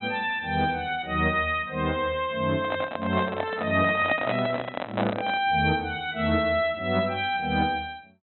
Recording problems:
treble cut off; nothing above 4 kHz
handling noise; from 2.5 to 5.5 s; peak +2 dB vs average level

